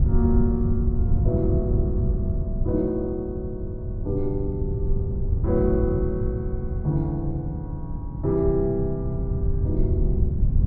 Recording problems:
wind on the microphone; below 110 Hz, SNR 0 dB

